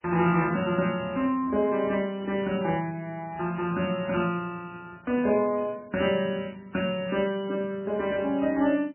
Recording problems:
lossy compression; MP3, log-spectral distance 3 dB, nothing above 2.8 kHz

